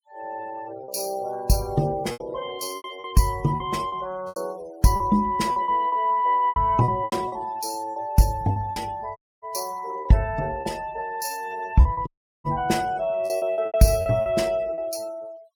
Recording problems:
noise reduction artefacts; signal-to-artefact ratio 23 dB
packet loss; 10% of the sound replaced, filled with repeated pitch periods
dropout; at 9 s and at 12 s

